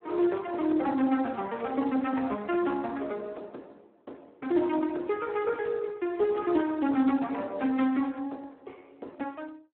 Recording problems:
phone line; 220 Hz to 3.3 kHz, Speex

